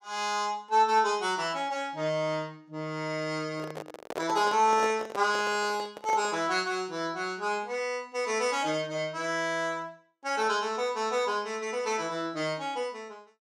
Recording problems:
handling noise; from 3.5 to 6.5 s; peak -1 dB vs average level

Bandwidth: 15.5 kHz